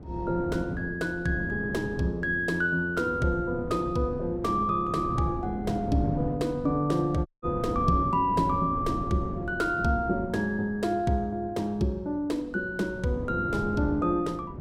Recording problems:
wind on the microphone; below 310 Hz, SNR 8 dB
audio cutting out; at 7.5 s

